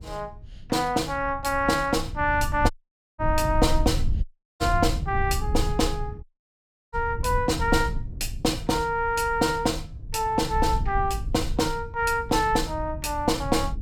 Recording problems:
rumble; below 84 Hz, SNR 7 dB
audio cutting out; at 2.5 s, at 4 s and at 6 s for 0.5 s

